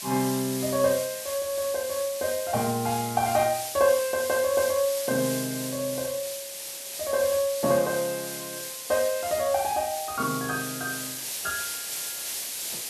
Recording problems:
background hiss; SNR 6 dB

